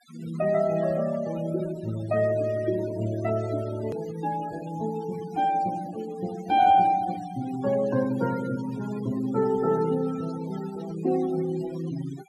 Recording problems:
noise reduction artefacts; signal-to-artefact ratio 16 dB
edit click; at 4 s

